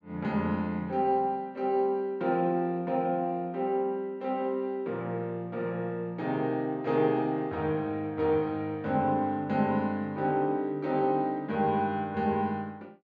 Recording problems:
none

